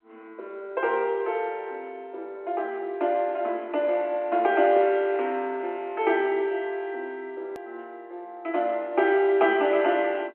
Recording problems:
phone line; 260 Hz to 3.2 kHz, G.711
edit click; at 7.5 s

